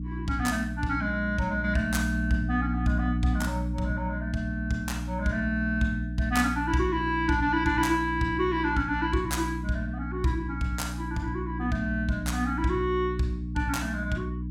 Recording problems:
hum; 60 Hz, harmonics up to 300 Hz, SNR 4 dB

